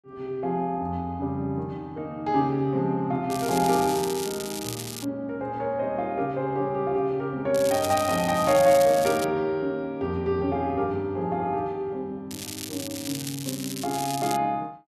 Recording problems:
crackle; from 3.5 to 5 s, from 7.5 to 9 s and from 12 to 14 s; loose cable, SNR 9 dB

